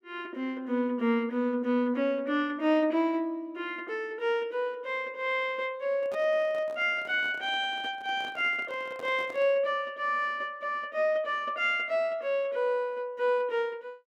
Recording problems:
microphone handling noise; from 6 to 9.5 s; peak -11 dB vs average level

